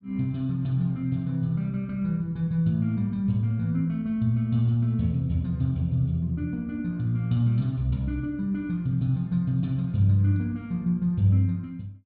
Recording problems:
treble missing; nothing above 4.7 kHz

